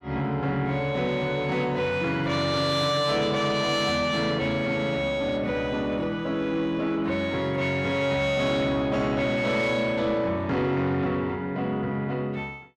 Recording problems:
distorted audio; soft clipping, signal-to-distortion ratio 11 dB

